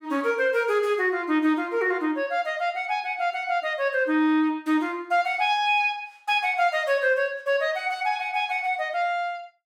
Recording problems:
none

